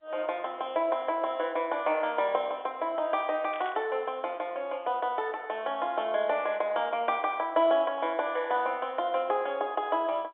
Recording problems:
phone line; 320 Hz to 3.6 kHz, G.711
burst of static; at 3.5 s; peak -10 dB vs average level

